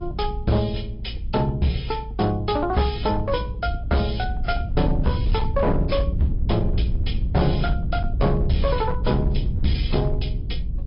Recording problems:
low-pass filter; nothing above 5.2 kHz
lossy codec; MP3, then AAC, log-spectral distance 2 dB
distorted audio; hard clipping, signal-to-distortion ratio 12 dB
rumble; below 88 Hz, SNR 3 dB

